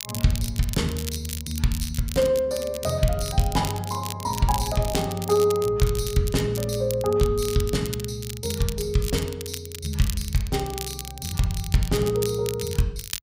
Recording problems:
crackle; vinyl, SNR 10 dB

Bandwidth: 15.5 kHz